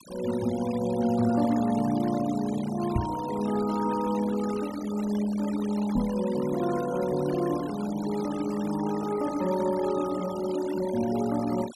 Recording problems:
noise reduction artefacts; signal-to-artefact ratio 15 dB
microphone thump; at 3 s and at 6 s; peak +3 dB vs average level

